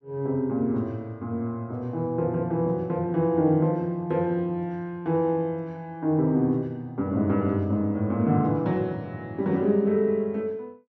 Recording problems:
none

